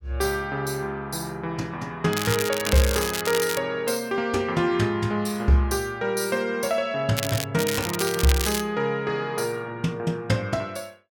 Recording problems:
crackle; from 2 to 3.5 s, at 7 s and from 7.5 to 8.5 s; loose cable, SNR 4 dB

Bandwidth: 17 kHz